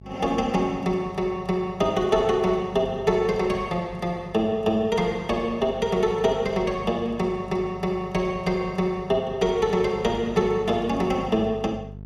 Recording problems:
hum; 50 Hz, harmonics up to 650 Hz, SNR 18 dB

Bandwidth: 14.5 kHz